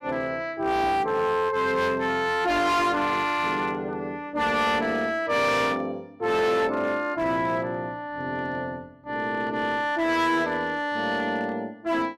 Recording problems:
distortion; hard clipping, signal-to-distortion ratio 10 dB

